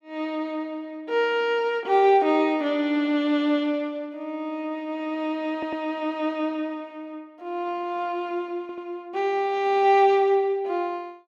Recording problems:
stutter; at 5.5 s and at 8.5 s

